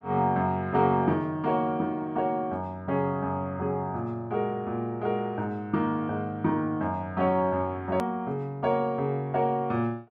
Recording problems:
edit click; at 8 s

